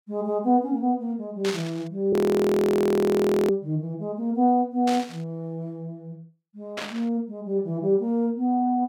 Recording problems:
burst of static; at 1.5 s, at 5 s and at 7 s; peak -3 dB vs average level
frozen audio; at 2 s for 1.5 s

